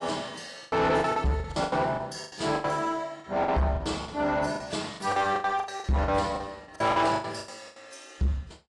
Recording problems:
codec artefacts; AAC, log-spectral distance 4 dB, nothing above 10.4 kHz
distorted audio; soft clipping, signal-to-distortion ratio 10 dB
lost packets; 17% of the sound replaced, filled with the last packet

